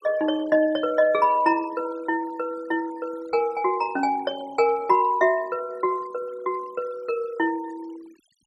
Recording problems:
denoising artefacts; signal-to-artefact ratio 24 dB

